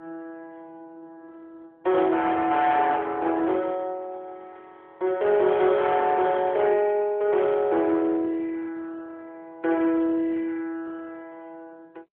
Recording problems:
telephone audio; 280 Hz to 3.6 kHz, AMR-NB
distorted audio; hard clipping, uneven, signal-to-distortion ratio 13 dB

